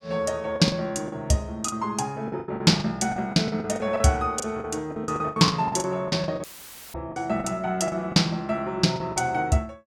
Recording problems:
packet loss; 14% of the sound replaced, filled with the last packet
dropout; at 6.5 s for 0.5 s; filled with static

